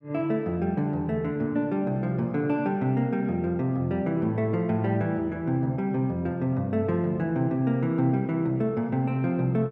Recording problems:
none

